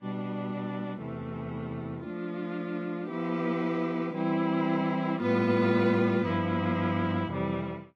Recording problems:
lossy codec; Vorbis, log-spectral distance 2 dB, nothing above 12.3 kHz

